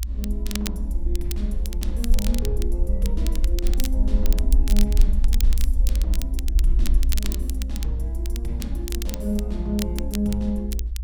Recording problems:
low-frequency rumble; below 58 Hz, SNR -6 dB
crackling; vinyl, SNR 5 dB

